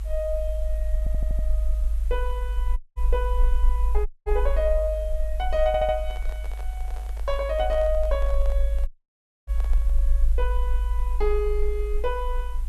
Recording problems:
background hiss; slope -2 dB per octave, SNR 25 dB
low-frequency rumble; below 52 Hz, strongest tone 26 Hz, SNR -1 dB
audio stuttering; at 1 s and at 5.5 s
audio cutting out; at 3 s, at 4 s and at 9 s for 0.5 s
handling noise; from 6 to 10 s; peak -10 dB vs average level

